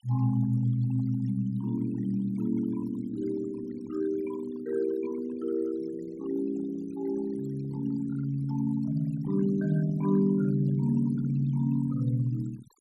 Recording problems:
noise reduction artefacts; signal-to-artefact ratio 19 dB

